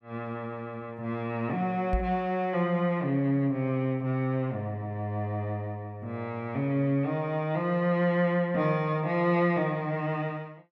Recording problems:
knock on the microphone; at 2 s; peak +2 dB vs average level

